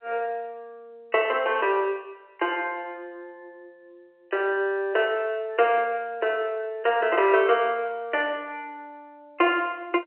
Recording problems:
phone line; 300 Hz to 3.1 kHz, G.711

